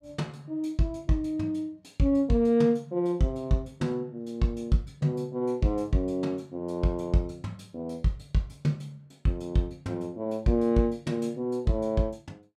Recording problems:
none

